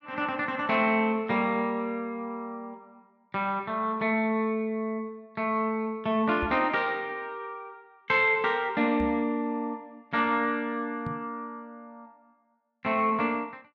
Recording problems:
microphone bump; at 6.5 s, at 9 s and at 11 s; peak -3 dB vs average level

